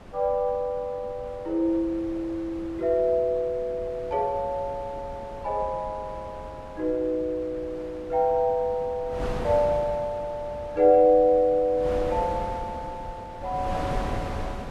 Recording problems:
wind noise; below 680 Hz, SNR 13 dB

